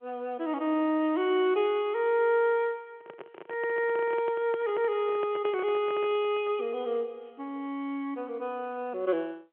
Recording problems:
phone line; 240 Hz to 3.3 kHz, G.711
microphone handling noise; from 3 to 6.5 s; peak -6 dB vs average level

